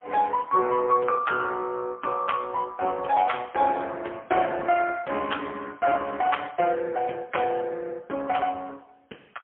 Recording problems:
phone line; 300 Hz to 3.3 kHz, AMR-NB, then MP3

